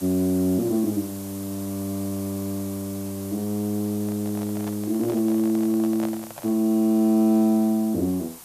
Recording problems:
hiss; SNR 16 dB
microphone handling noise; from 4 to 6.5 s; peak -7 dB vs average level

